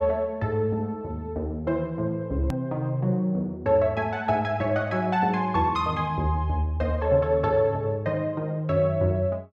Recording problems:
click at an edit; at 2.5 s

